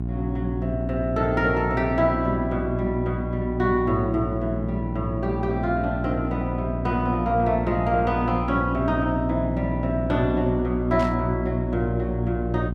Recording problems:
hum; 60 Hz, harmonics up to 420 Hz, SNR 4 dB
burst of static; at 11 s; peak -10 dB vs average level

